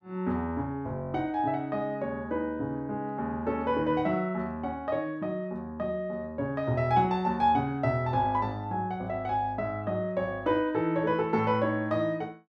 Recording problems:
none

